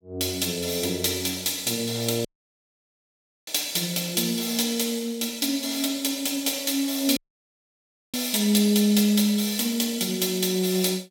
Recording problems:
dropout; at 2.5 s for 1 s and at 7 s for 1 s
crackle; from 3.5 to 5.5 s; loose cable, SNR 29 dB

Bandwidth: 18 kHz